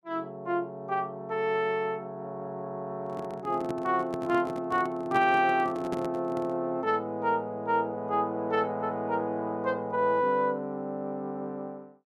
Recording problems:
handling noise; from 3 to 6.5 s; peak -2 dB vs average level

